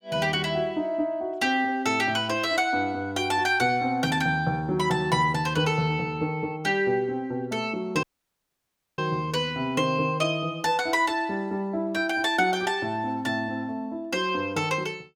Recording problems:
audio cutting out; at 8 s for 1 s

